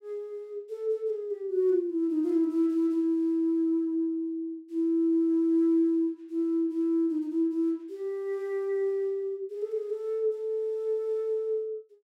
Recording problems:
none

